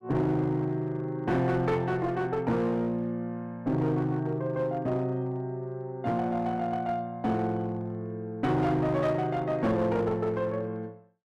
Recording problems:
distorted audio; hard clipping, uneven, signal-to-distortion ratio 11 dB

